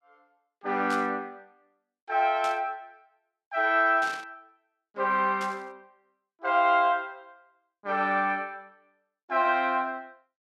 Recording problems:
burst of static; 4 times, first at 1 s; peak -10 dB vs average level

